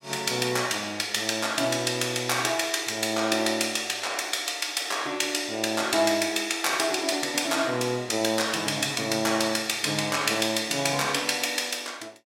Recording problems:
none

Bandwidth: 16 kHz